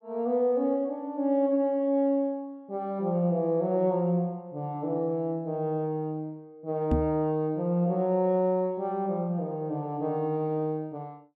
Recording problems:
microphone bump; at 7 s; peak +5 dB vs average level

